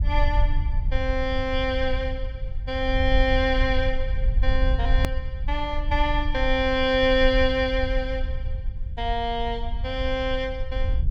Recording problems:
low-frequency rumble; below 60 Hz, SNR 3 dB
hard cut with a click; at 5 s

